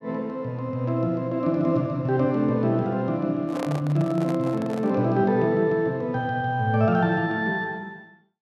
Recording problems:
handling noise; from 3.5 to 5 s; peak -4 dB vs average level

